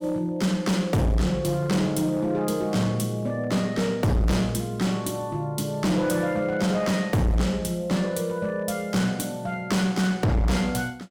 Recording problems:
distortion; hard clipping, uneven, signal-to-distortion ratio 7 dB

